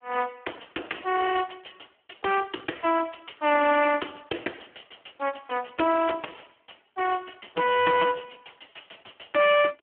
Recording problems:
phone line; 260 Hz to 2.8 kHz, Speex

